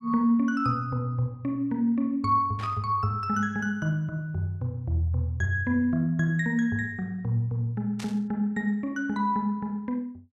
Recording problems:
static burst; at 2.5 s and at 8 s; peak -9 dB vs average level

